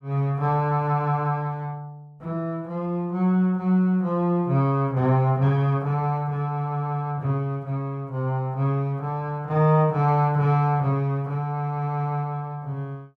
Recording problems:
none

